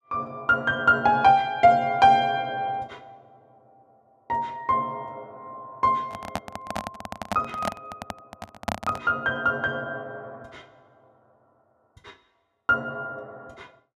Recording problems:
microphone handling noise; from 6 to 9 s; peak 0 dB vs average level

